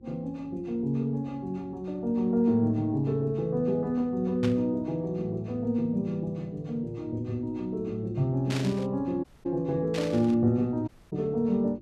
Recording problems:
electrical hum; 50 Hz, harmonics up to 350 Hz, SNR 26 dB
burst of static; at 4.5 s, at 8.5 s and at 10 s; peak -3 dB vs average level
audio cutting out; at 9 s and at 11 s

